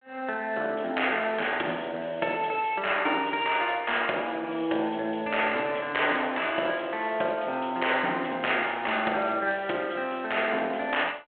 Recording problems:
phone line; 280 Hz to 3.4 kHz, G.726

